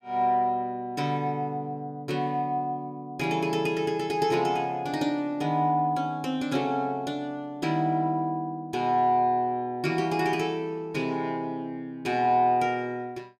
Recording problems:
none

